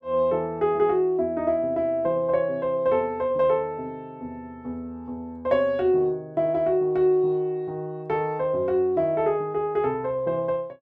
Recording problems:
none

